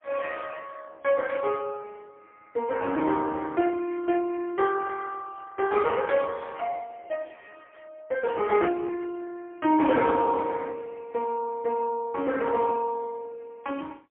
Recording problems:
telephone audio; 260 Hz to 2.6 kHz, AMR-NB, then MP3

